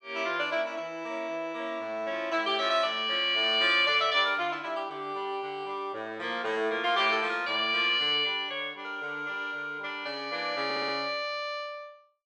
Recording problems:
stutter; at 11 s

